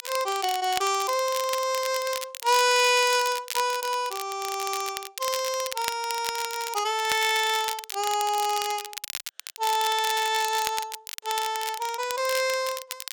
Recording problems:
crackle; vinyl, SNR 9 dB

